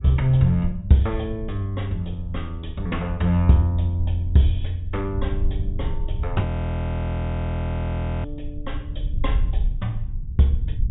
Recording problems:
treble cut off; nothing above 4 kHz
low-frequency rumble; below 72 Hz, SNR 7 dB
frozen audio; at 6.5 s for 2 s

